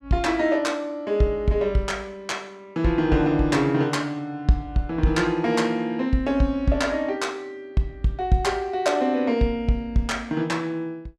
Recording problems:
none

